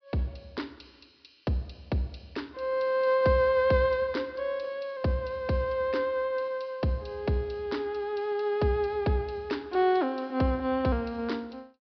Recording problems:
low-pass filter; nothing above 5.5 kHz

